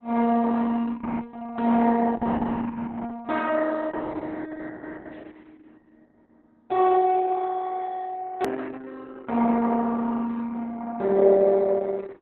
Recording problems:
codec artefacts; Opus, log-spectral distance 4 dB, nothing above 13.1 kHz
hard cut with a click; at 8.5 s

